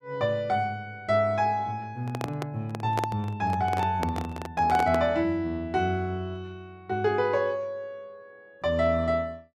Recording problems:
handling noise; from 2 to 5 s; peak +1 dB vs average level

